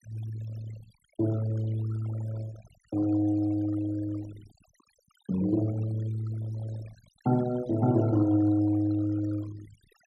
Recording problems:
denoising artefacts; signal-to-artefact ratio 19 dB

